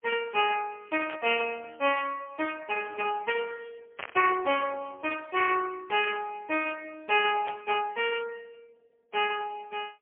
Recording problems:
phone line; 320 Hz to 3 kHz, AMR-NB, then MP3
static burst; 4 times, first at 1 s; peak -4 dB vs average level

